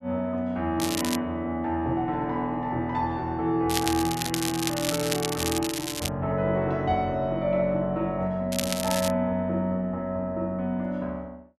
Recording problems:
crackling; at 1 s, from 3.5 to 6 s and at 8.5 s; loose cable, SNR 4 dB

